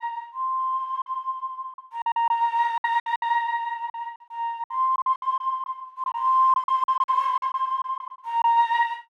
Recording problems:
packet loss; 11% of the sound replaced, filled with silence

